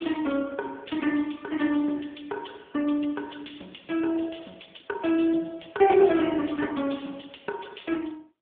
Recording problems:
phone line; 240 Hz to 3.4 kHz, AMR-NB

